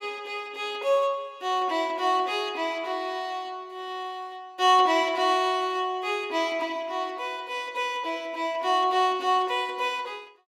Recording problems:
none

